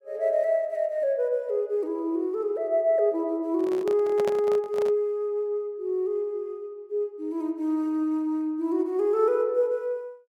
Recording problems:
microphone handling noise; from 3.5 to 5 s; peak -3 dB vs average level

